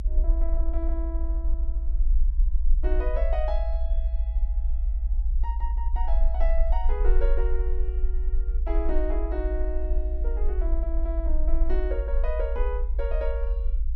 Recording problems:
rumble; below 54 Hz, SNR -7 dB

